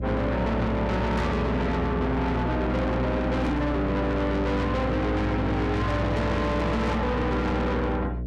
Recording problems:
distorted audio; soft clipping, signal-to-distortion ratio 6 dB
hum; 60 Hz, harmonics up to 660 Hz, SNR 5 dB
static burst; at 3.5 s; peak -16 dB vs average level

